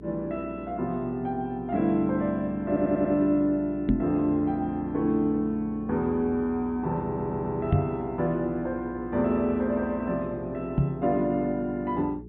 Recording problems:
treble cut off; nothing above 4 kHz
hum; 60 Hz, harmonics up to 420 Hz, SNR 16 dB
stutter; at 2.5 s and at 7 s
knock on the microphone; at 4 s, at 7.5 s and at 11 s; peak +7 dB vs average level

